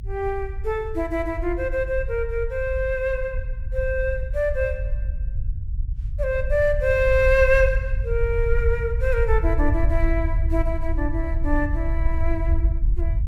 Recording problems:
rumble; below 66 Hz, SNR 3 dB

